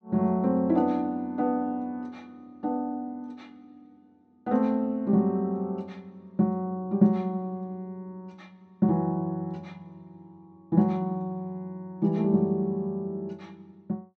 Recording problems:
treble missing; nothing above 8 kHz

